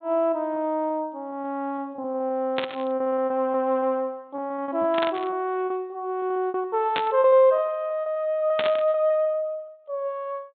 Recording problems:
low-pass filter; nothing above 4 kHz
packet loss; 11% of the sound replaced, filled with repeated pitch periods
static burst; 4 times, first at 2.5 s; peak +1 dB vs average level

